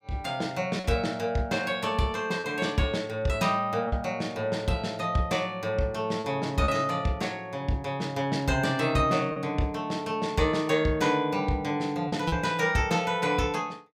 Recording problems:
lost packets; 2% of the sound replaced, filled with repeated pitch periods

